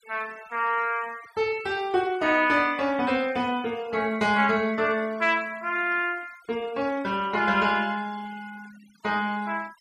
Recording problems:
noise reduction artefacts; signal-to-artefact ratio 23 dB

